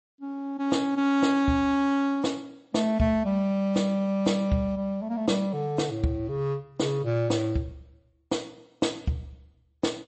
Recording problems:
lossy codec; MP3, log-spectral distance 2 dB, nothing above 8.2 kHz

